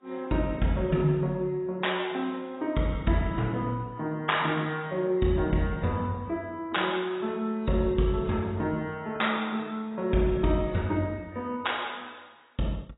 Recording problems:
codec artefacts; AAC, log-spectral distance 5 dB, nothing above 3.8 kHz

